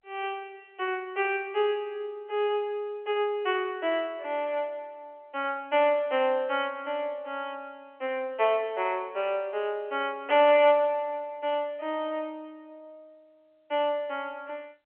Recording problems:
telephone audio; 320 Hz to 3.2 kHz, G.711

